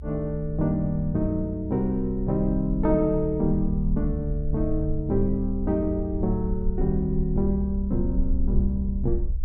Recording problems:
rumble; below 64 Hz, SNR 7 dB

